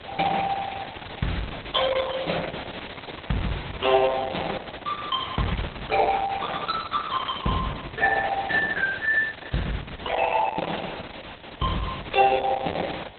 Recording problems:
lossy compression; Opus, log-spectral distance 16 dB, nothing above 4 kHz
hiss; SNR 12 dB

